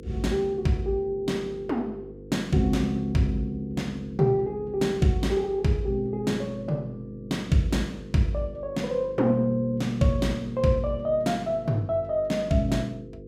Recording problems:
hum; 50 Hz, harmonics up to 500 Hz, SNR 17 dB

